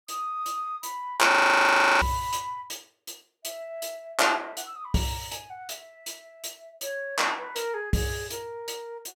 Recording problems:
frozen audio; at 1.5 s for 0.5 s

